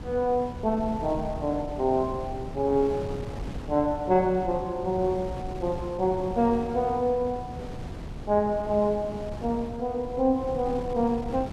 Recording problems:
wind on the microphone; below 300 Hz, SNR 11 dB

